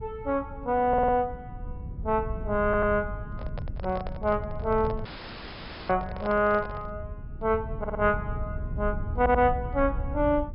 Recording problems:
treble cut off; nothing above 5.3 kHz
low-frequency rumble; below 110 Hz, SNR 10 dB
audio stuttering; 4 times, first at 1 s
handling noise; from 3.5 to 7 s; peak -7 dB vs average level
audio cutting out; at 5 s for 1 s

